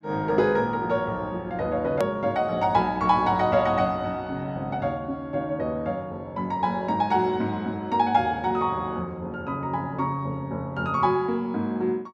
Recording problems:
edit click; at 2 s

